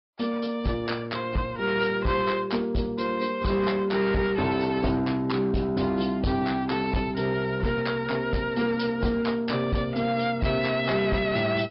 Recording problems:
low-pass filter; nothing above 5.2 kHz
lossy compression; AAC, log-spectral distance 3 dB
distortion; hard clipping, signal-to-distortion ratio 11 dB

